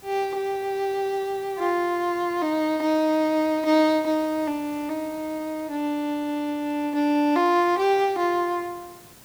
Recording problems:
background hiss; slope -3 dB per octave, SNR 23 dB

